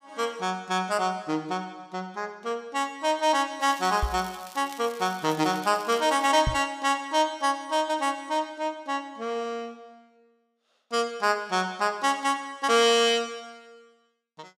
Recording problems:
crackling; from 3.5 to 6.5 s; loose cable, SNR 19 dB
microphone bump; at 4 s and at 6.5 s; peak +2 dB vs average level

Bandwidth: 15 kHz